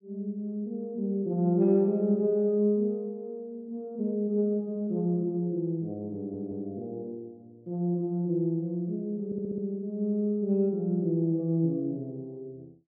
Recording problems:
audio stuttering; at 6 s and at 9.5 s

